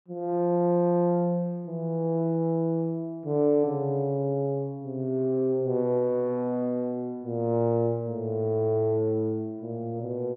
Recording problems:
none

